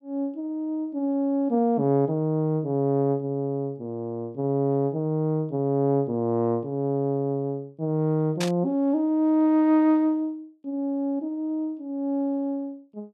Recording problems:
static burst; at 8.5 s; peak -2 dB vs average level

